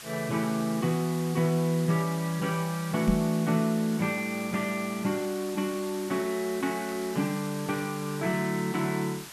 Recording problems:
background hiss; SNR 13 dB
microphone bump; at 3 s; peak +6 dB vs average level

